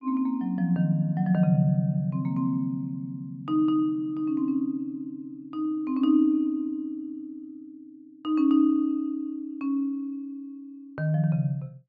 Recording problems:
none

